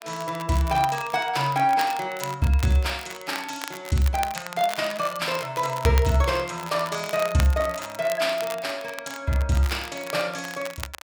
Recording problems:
crackle; vinyl, SNR 13 dB

